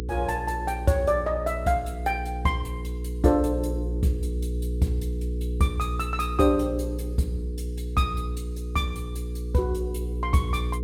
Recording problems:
hum; 60 Hz, harmonics up to 480 Hz, SNR 4 dB

